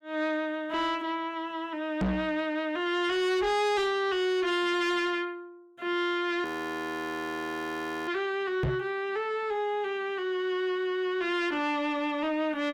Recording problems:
distortion; soft clipping, signal-to-distortion ratio 8 dB
microphone bump; at 2 s and at 8.5 s; peak +4 dB vs average level
frozen audio; at 6.5 s for 1.5 s

